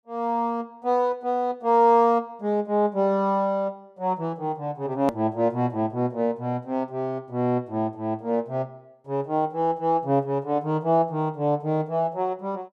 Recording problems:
click at an edit; at 5 s

